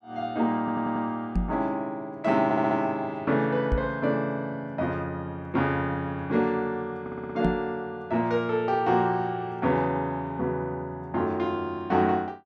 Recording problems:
stutter; at 0.5 s, at 2.5 s and at 7 s
microphone bump; at 1.5 s, at 3.5 s and at 7.5 s; peak +5 dB vs average level

